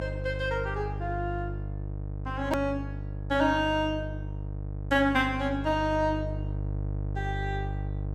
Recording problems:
hum; 50 Hz, harmonics up to 650 Hz, SNR 6 dB
hard cut with a click; at 2.5 s

